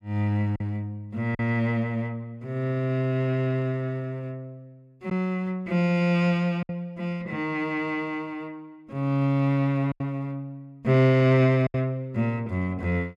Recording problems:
packet loss; 2% of the sound replaced, filled with silence

